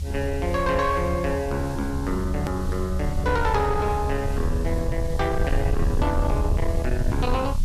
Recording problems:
distorted audio; soft clipping, signal-to-distortion ratio 12 dB
background hiss; SNR 20 dB
rumble; below 82 Hz, SNR 2 dB
edit click; at 2.5 s

